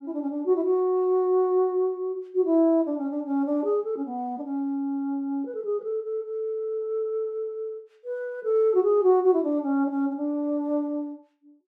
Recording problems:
none

